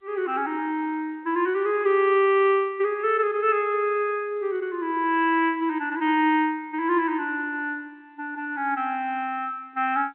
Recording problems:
phone line; 300 Hz to 3.3 kHz, G.711

